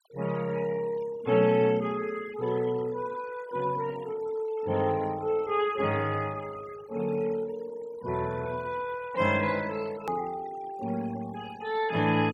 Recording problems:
denoising artefacts; signal-to-artefact ratio 18 dB
hard cut with a click; at 10 s

